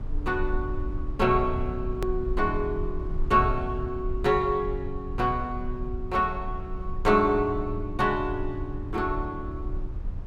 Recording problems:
rumble; below 66 Hz, SNR 8 dB
hard cut with a click; at 2 s

